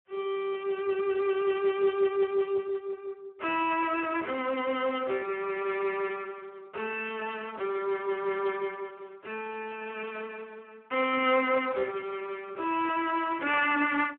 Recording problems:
phone line; 260 Hz to 3.1 kHz, Speex

